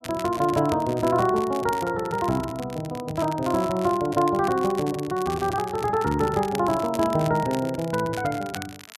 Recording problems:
crackle; vinyl, SNR 16 dB

